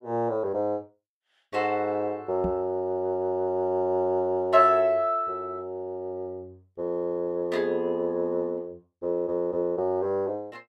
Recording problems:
microphone thump; at 2.5 s; peak -2 dB vs average level

